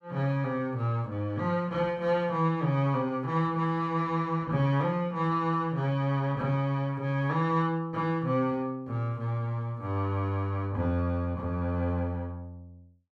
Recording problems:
none

